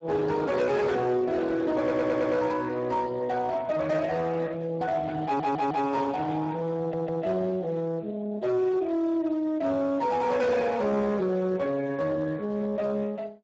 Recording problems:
lossy compression; Speex, log-spectral distance 3 dB, nothing above 7.6 kHz
distorted audio; hard clipping, uneven, signal-to-distortion ratio 10 dB
audio stuttering; at 2 s, at 5 s and at 7 s

